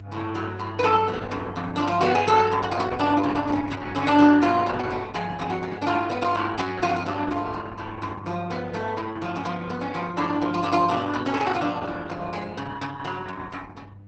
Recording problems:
lossy compression; Opus, log-spectral distance 4 dB, nothing above 8.2 kHz
mains hum; 50 Hz, harmonics up to 500 Hz, SNR 16 dB

